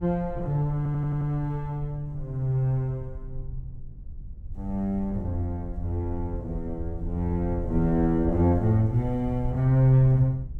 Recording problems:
rumble; below 70 Hz, SNR 13 dB
stutter; at 1 s

